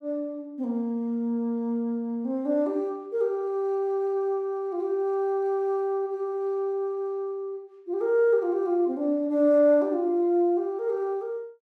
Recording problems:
none

